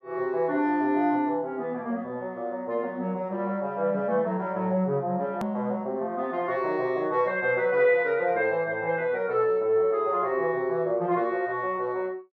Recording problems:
hard cut with a click; at 5.5 s

